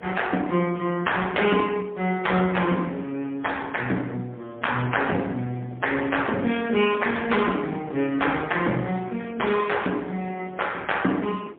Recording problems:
phone line; 190 Hz to 3.5 kHz, AMR-NB, then MP3
wind noise; below 560 Hz, SNR 21 dB

